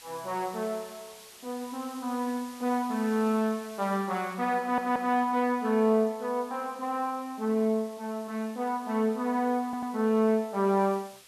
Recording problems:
background hiss; slope +1 dB per octave, SNR 21 dB
audio stuttering; at 4.5 s and at 9.5 s

